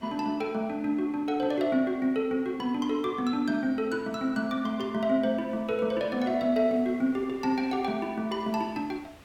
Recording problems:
hiss; SNR 27 dB

